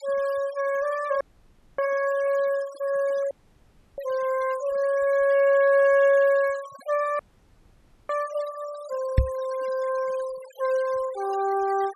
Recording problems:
denoising artefacts; signal-to-artefact ratio 21 dB
dropout; at 1 s for 0.5 s, at 3.5 s for 0.5 s and at 7 s for 1 s
microphone thump; at 9 s; peak +7 dB vs average level

